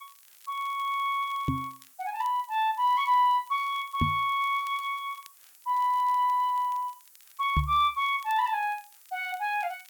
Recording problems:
hiss; slope +2 dB per octave, SNR 26 dB
crackle; vinyl, SNR 29 dB
microphone thump; at 1.5 s, at 4 s and at 7.5 s; peak +4 dB vs average level

